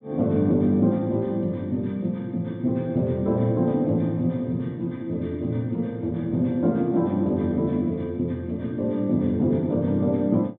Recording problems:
treble missing; nothing above 4 kHz

